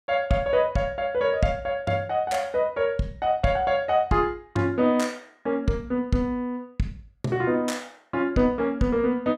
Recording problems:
none

